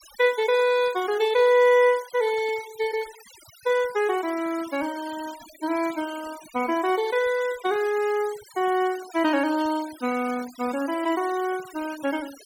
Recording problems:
denoising artefacts; signal-to-artefact ratio 19 dB

